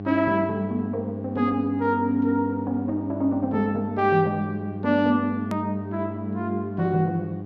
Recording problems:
hum; 50 Hz, harmonics up to 800 Hz, SNR 9 dB
edit click; at 5.5 s

